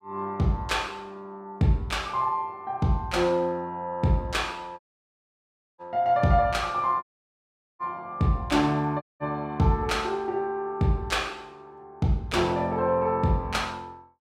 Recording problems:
audio cutting out; at 5 s for 1 s, at 7 s for 1 s and at 9 s

